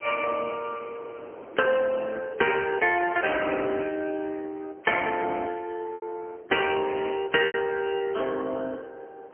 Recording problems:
telephone audio; 320 Hz to 2.8 kHz, AMR-NB
wind on the microphone; below 730 Hz, SNR 21 dB
packet loss; 2% of the sound replaced, filled with repeated pitch periods

